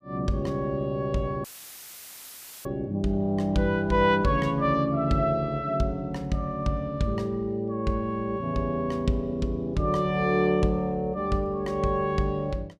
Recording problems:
dropout; at 1.5 s for 1 s; filled with static

